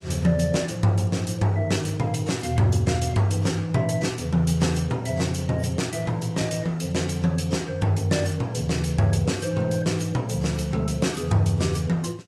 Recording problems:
codec artefacts; AAC, log-spectral distance 3 dB, nothing above 12 kHz

